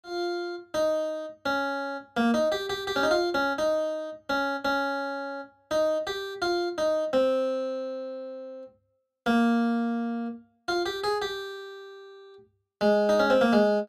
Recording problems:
none

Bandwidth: 14.5 kHz